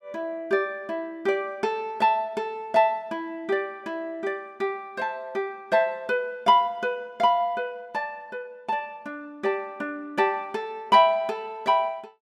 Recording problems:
none

